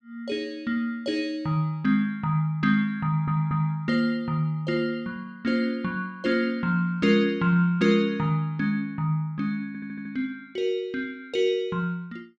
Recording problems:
audio stuttering; at 3 s and at 9.5 s

